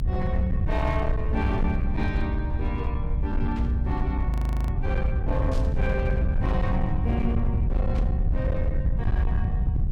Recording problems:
distortion; hard clipping, signal-to-distortion ratio 11 dB
low-frequency rumble; below 94 Hz, SNR -5 dB
burst of static; at 3.5 s, at 5.5 s and at 8 s; peak -9 dB vs average level
frozen audio; at 4.5 s

